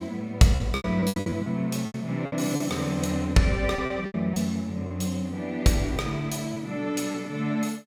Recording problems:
packet loss; 9% of the sound replaced, filled with repeated pitch periods

